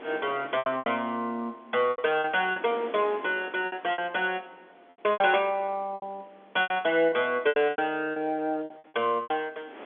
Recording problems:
phone line; 240 Hz to 3.5 kHz, G.711
wind on the microphone; below 1.6 kHz, SNR 21 dB
packet loss; 13% of the sound replaced, filled with repeated pitch periods

